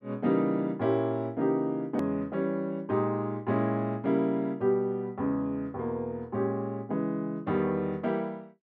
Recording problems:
edit click; at 2 s

